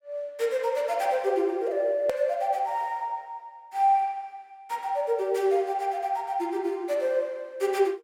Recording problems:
edit click; at 2 s

